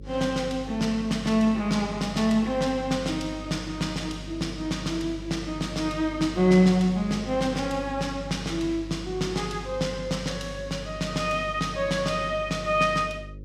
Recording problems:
hum; 50 Hz, harmonics up to 550 Hz, SNR 15 dB

